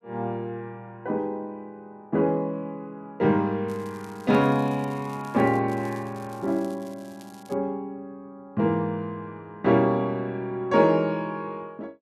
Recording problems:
crackle; from 3.5 to 5.5 s and from 5.5 to 7.5 s; loose cable, SNR 26 dB

